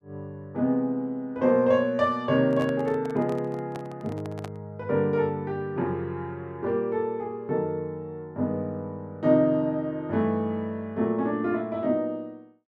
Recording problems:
microphone handling noise; from 2.5 to 4.5 s; peak -8 dB vs average level

